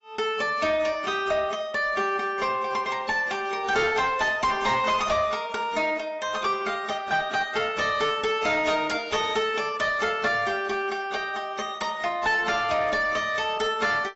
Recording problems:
lossy compression; AAC, log-spectral distance 3 dB, nothing above 7.6 kHz
distorted audio; soft clipping, signal-to-distortion ratio 10 dB

